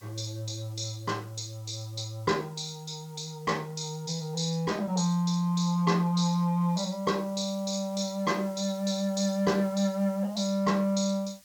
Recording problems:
lossy codec; G.722, log-spectral distance 4 dB
background hiss; SNR 25 dB

